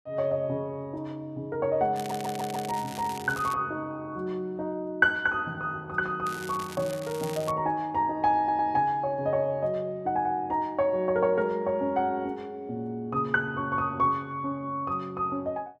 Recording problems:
crackle; from 2 to 3.5 s and from 6.5 to 7.5 s; loose cable, SNR 15 dB
stutter; at 2 s and at 8.5 s

